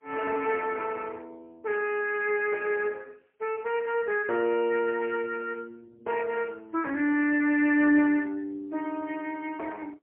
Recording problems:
telephone audio; 260 Hz to 3.1 kHz, AMR-NB, then MP3

